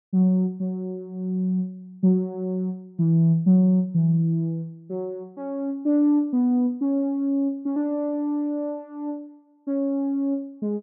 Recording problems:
none

